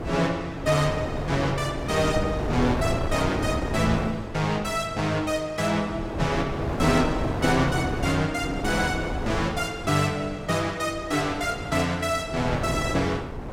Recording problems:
wind on the microphone; below 570 Hz, SNR 6 dB

